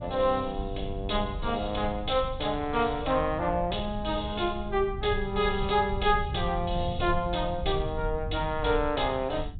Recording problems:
treble cut off; nothing above 4 kHz
rumble; below 100 Hz, SNR 9 dB

